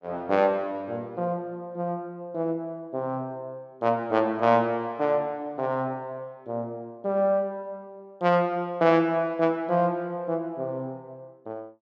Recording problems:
none

